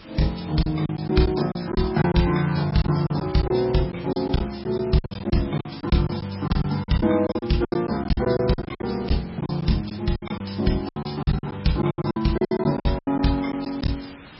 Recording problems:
codec artefacts; MP3, log-spectral distance 7 dB, nothing above 5.5 kHz
hiss; SNR 20 dB
lost packets; 14% of the sound replaced, filled with silence

